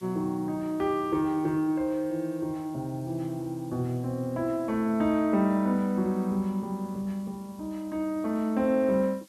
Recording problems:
hiss; slope +3 dB per octave, SNR 28 dB

